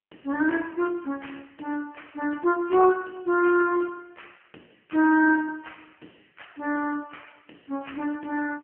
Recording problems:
phone line; 220 Hz to 2.7 kHz, AMR-NB

